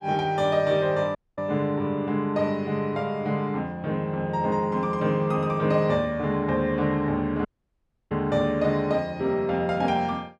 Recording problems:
audio cutting out; at 1 s and at 7.5 s for 0.5 s

